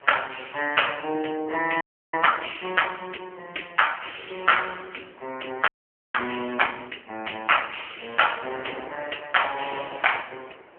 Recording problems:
telephone audio; 280 Hz to 3.1 kHz, AMR-NB
wind on the microphone; below 1.8 kHz, SNR 20 dB
audio freezing; at 2 s and at 5.5 s

